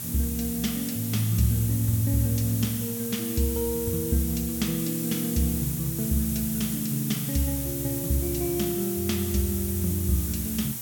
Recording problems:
electrical hum; 60 Hz, harmonics up to 840 Hz, SNR 16 dB
hiss; slope +2 dB per octave, SNR 4 dB

